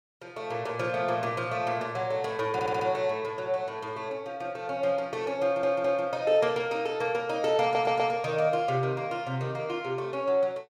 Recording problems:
stutter; at 2.5 s, at 5.5 s and at 7.5 s

